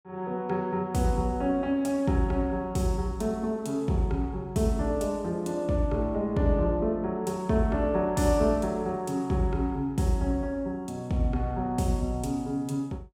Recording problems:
none

